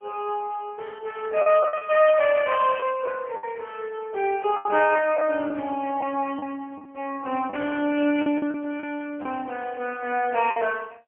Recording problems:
phone line; 260 Hz to 3.1 kHz, AMR-NB, then MP3
packet loss; 6% of the sound replaced, filled with the last packet
static burst; at 5 s and at 7.5 s; peak -14 dB vs average level

